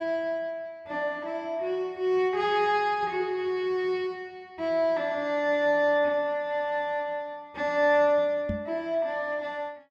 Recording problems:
microphone thump; at 8.5 s; peak -1 dB vs average level

